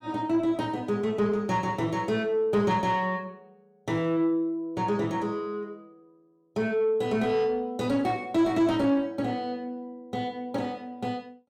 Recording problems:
distortion; soft clipping, signal-to-distortion ratio 11 dB

